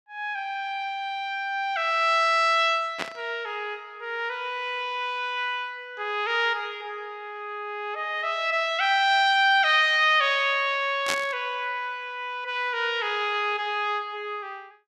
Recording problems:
burst of static; at 3 s and at 11 s; peak +1 dB vs average level

